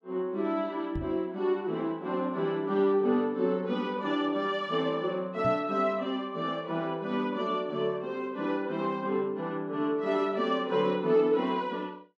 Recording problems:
microphone bump; at 1 s and at 5.5 s; peak -3 dB vs average level

